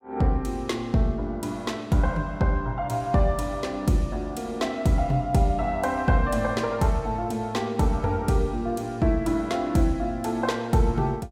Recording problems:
none

